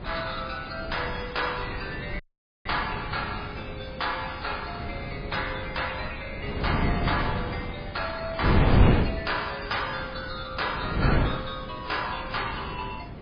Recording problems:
lossy codec; MP3, log-spectral distance 7 dB, nothing above 5 kHz
wind noise; below 330 Hz, SNR -1 dB
dropout; at 2 s

